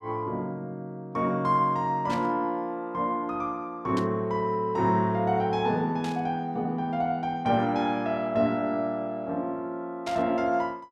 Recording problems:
burst of static; 4 times, first at 2 s; peak -7 dB vs average level

